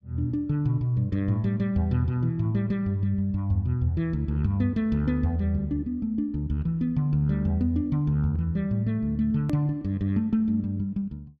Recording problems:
click at an edit; at 9.5 s

